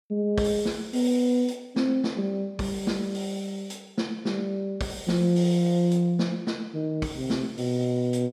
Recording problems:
none

